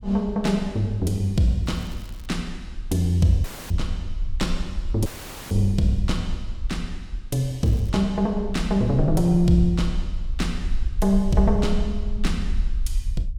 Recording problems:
rumble; below 48 Hz, strongest tone 20 Hz, SNR 9 dB
crackle; at 1.5 s and at 7.5 s; loose cable, SNR 28 dB
dropout; at 3.5 s and at 5 s

